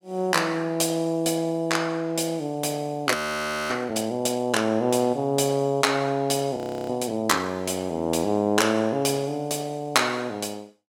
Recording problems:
audio freezing; at 3 s for 0.5 s and at 6.5 s

